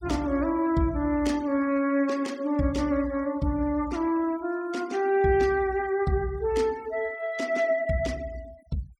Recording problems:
denoising artefacts; signal-to-artefact ratio 22 dB

